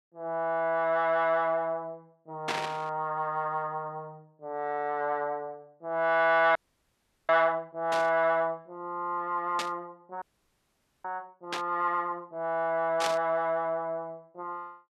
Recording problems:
burst of static; 5 times, first at 2.5 s; peak +2 dB vs average level
audio freezing; at 6.5 s for 0.5 s and at 10 s for 1 s

